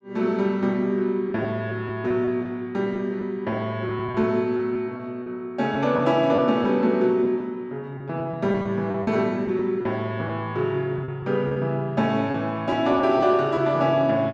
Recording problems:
lost packets; 6% of the sound replaced, filled with repeated pitch periods

